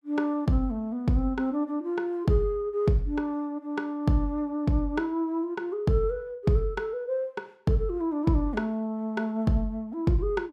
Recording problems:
none

